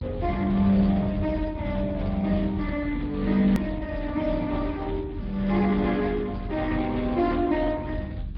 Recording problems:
low-pass filter; nothing above 5.5 kHz
lossy compression; Speex, log-spectral distance 2 dB
electrical hum; 50 Hz, harmonics up to 400 Hz, SNR 25 dB
rumble; below 110 Hz, strongest tone 42 Hz, SNR 10 dB
hard cut with a click; at 3.5 s

